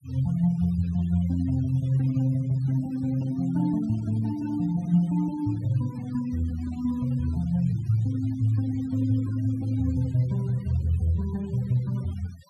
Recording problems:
noise reduction artefacts; signal-to-artefact ratio 24 dB

